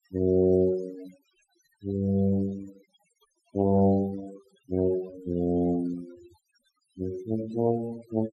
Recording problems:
denoising artefacts; signal-to-artefact ratio 19 dB

